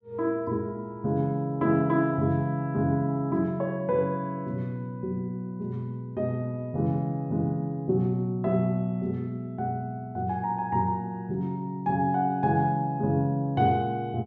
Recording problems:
none

